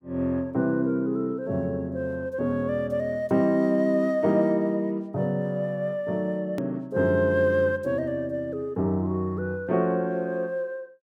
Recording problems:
click at an edit; at 6.5 s

